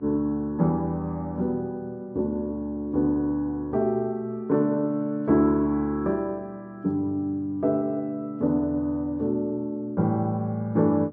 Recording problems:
hum; 60 Hz, harmonics up to 1.2 kHz, SNR 25 dB

